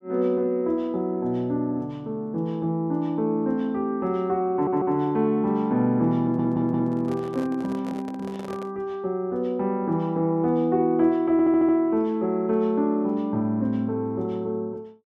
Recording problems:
audio stuttering; at 4.5 s, at 6 s and at 11 s
microphone handling noise; from 6.5 to 8.5 s; peak -10 dB vs average level

